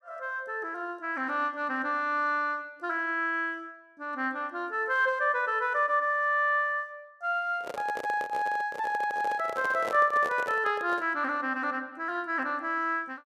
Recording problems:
microphone handling noise; from 7.5 to 11 s; peak -3 dB vs average level

